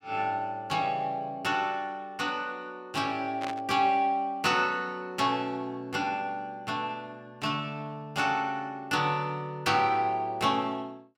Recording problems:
static burst; at 3.5 s; peak -5 dB vs average level

